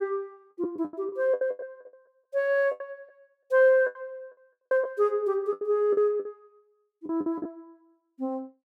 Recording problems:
lost packets; 16% of the sound replaced, filled with the last packet

